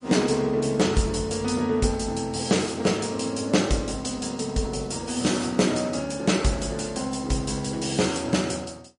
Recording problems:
lossy compression; MP3, log-spectral distance 6 dB, nothing above 10.4 kHz

